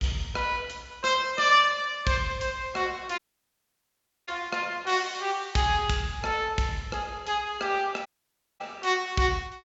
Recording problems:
treble missing; nothing above 8 kHz
dropout; at 3 s for 1 s and at 8 s for 0.5 s

